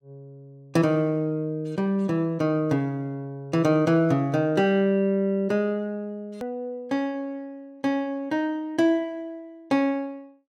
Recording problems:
hard cut with a click; at 6.5 s

